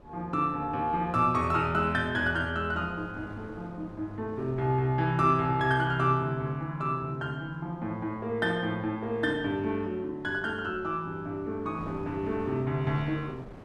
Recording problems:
wind noise; below 590 Hz, SNR 20 dB

